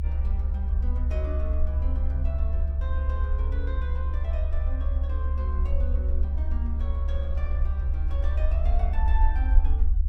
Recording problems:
rumble; below 70 Hz, SNR -13 dB

